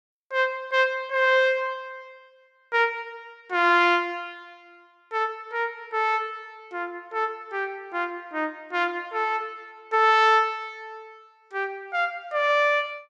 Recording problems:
none

